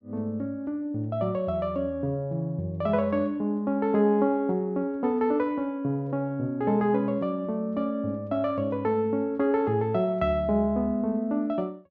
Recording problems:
none

